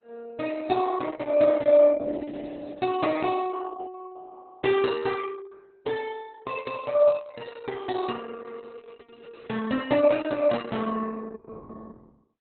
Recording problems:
lossy compression; Opus, log-spectral distance 4 dB, nothing above 4 kHz

